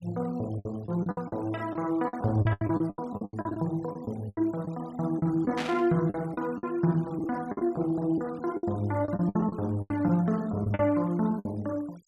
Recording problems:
noise reduction artefacts; signal-to-artefact ratio 26 dB
lost packets; 14% of the sound replaced, filled with the last packet
burst of static; at 5.5 s; peak -2 dB vs average level

